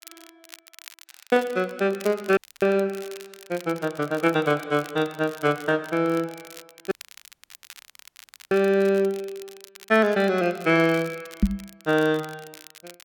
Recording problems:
crackle; vinyl, SNR 22 dB
audio cutting out; at 2.5 s and at 7 s for 1.5 s
knock on the microphone; at 11 s; peak +7 dB vs average level

